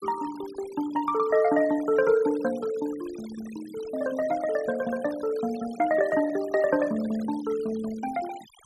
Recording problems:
noise reduction artefacts; signal-to-artefact ratio 19 dB

